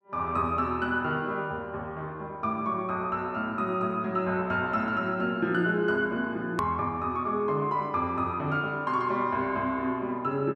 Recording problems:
edit click; at 6.5 s

